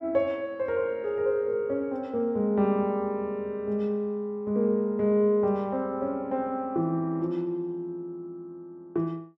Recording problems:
none

